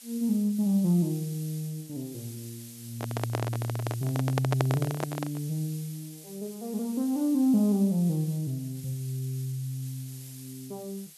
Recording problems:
background hiss; SNR 16 dB
microphone handling noise; from 3 to 5.5 s; peak +4 dB vs average level

